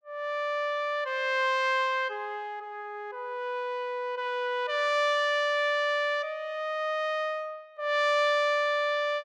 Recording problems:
none

